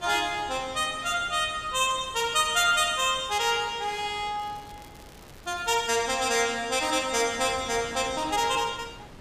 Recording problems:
wind noise; below 1.3 kHz, SNR 21 dB
crackling; from 4.5 to 6 s; loose cable, SNR 28 dB

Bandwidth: 15 kHz